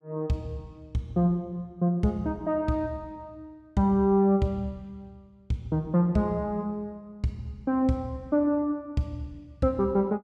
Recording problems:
none

